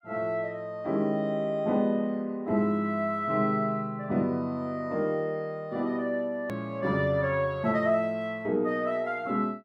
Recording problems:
edit click; at 6.5 s

